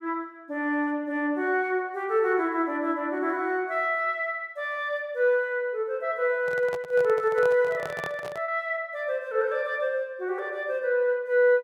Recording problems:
lost packets; 0.3% of the sound replaced, filled with repeated pitch periods
handling noise; from 6.5 to 8.5 s; peak -6 dB vs average level

